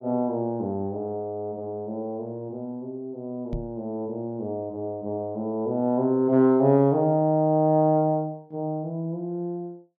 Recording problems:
microphone bump; at 3.5 s; peak -3 dB vs average level

